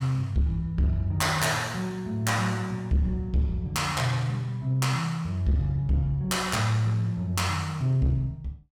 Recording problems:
distorted audio; soft clipping, signal-to-distortion ratio 11 dB

